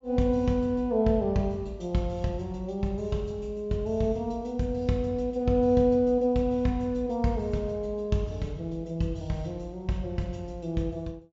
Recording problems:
treble missing; nothing above 7.4 kHz

